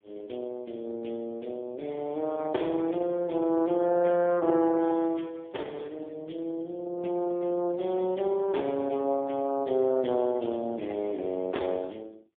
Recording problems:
telephone audio; 220 Hz to 3.3 kHz, AMR-NB, then MP3

